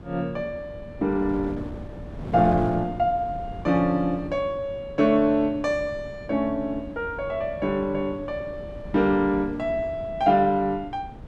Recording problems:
wind on the microphone; below 320 Hz, SNR 14 dB

